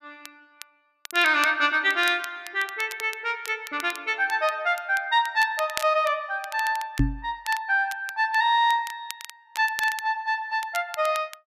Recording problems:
crackle; vinyl, SNR 16 dB
knock on the microphone; at 7 s; peak +5 dB vs average level

